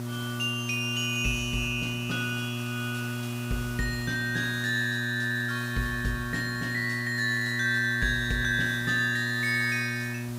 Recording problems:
hum; 60 Hz, harmonics up to 960 Hz, SNR 6 dB
background hiss; slope -1 dB per octave, SNR 16 dB

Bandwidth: 15.5 kHz